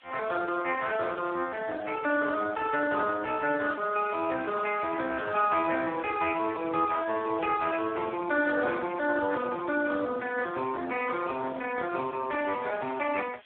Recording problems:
phone line; 260 Hz to 2.5 kHz, Speex
background hiss; SNR 28 dB

